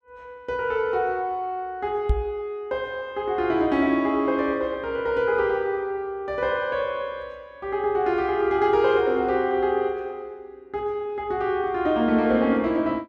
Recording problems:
microphone thump; at 2 s; peak +5 dB vs average level

